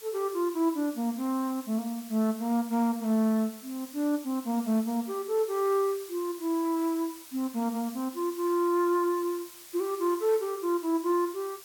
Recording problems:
background hiss; slope +1 dB per octave, SNR 17 dB

